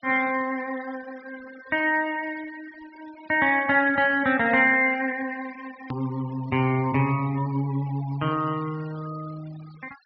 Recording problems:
treble missing; nothing above 5.5 kHz
noise reduction artefacts; signal-to-artefact ratio 23 dB
hard cut with a click; at 6 s

